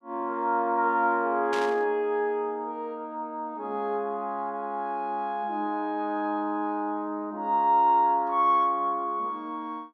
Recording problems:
static burst; at 1.5 s; peak -5 dB vs average level

